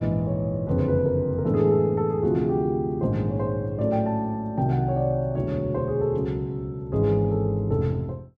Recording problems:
none

